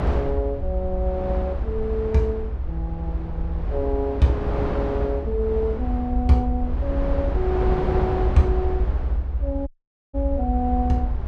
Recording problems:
low-frequency rumble; below 68 Hz, SNR 2 dB
wind on the microphone; below 710 Hz, SNR 7 dB
audio cutting out; at 9.5 s

